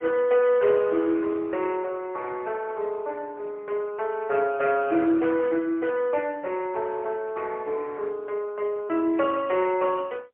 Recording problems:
phone line; 280 Hz to 3.1 kHz, AMR-NB, then MP3

